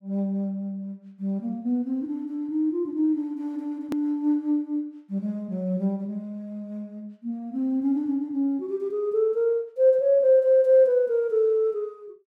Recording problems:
click at an edit; at 4 s

